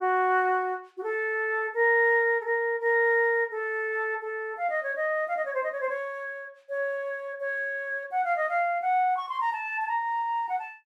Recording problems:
none

